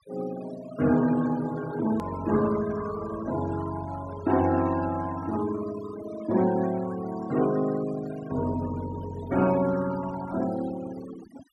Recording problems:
denoising artefacts; signal-to-artefact ratio 15 dB
click at an edit; at 2 s

